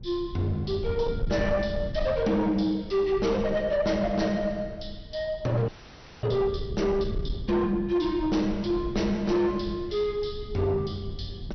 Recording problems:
codec artefacts; MP2, log-spectral distance 3 dB, nothing above 6 kHz
distortion; soft clipping, signal-to-distortion ratio 12 dB
wind noise; below 130 Hz, SNR 11 dB
frozen audio; at 5.5 s for 0.5 s

